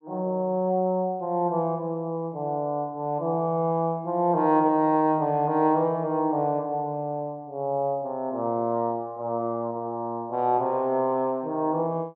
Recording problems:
none

